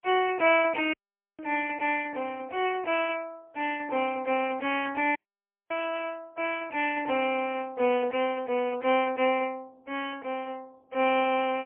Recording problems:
phone line; 280 Hz to 3.1 kHz, AMR-NB, then MP3
audio cutting out; at 1 s and at 5 s for 0.5 s

